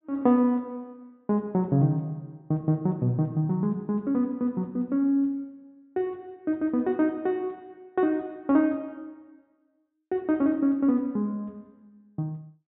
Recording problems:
low-pass filter; nothing above 3.9 kHz

